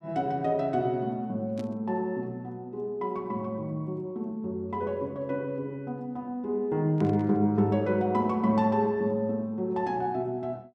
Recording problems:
burst of static; at 1.5 s and at 7 s; peak -14 dB vs average level

